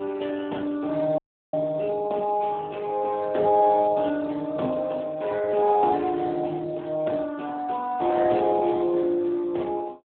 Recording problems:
phone line; 190 Hz to 3.5 kHz, Speex
audio cutting out; at 1 s

